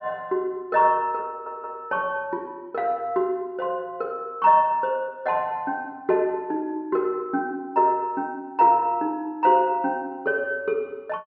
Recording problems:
low-pass filter; nothing above 5.7 kHz
stutter; at 1.5 s

